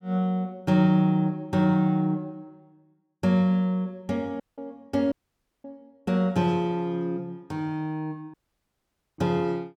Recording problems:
dropout; at 4.5 s, at 5 s for 0.5 s and at 8.5 s for 1 s

